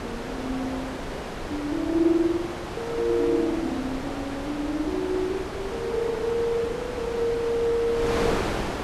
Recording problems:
wind on the microphone; below 1.4 kHz, SNR 5 dB

